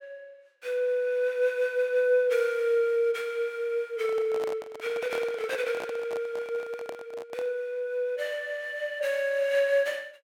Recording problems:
handling noise; from 4 to 7.5 s; peak -6 dB vs average level

